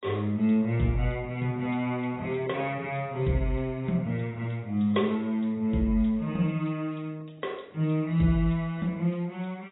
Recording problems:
lossy codec; AAC, log-spectral distance 2 dB, nothing above 3.8 kHz

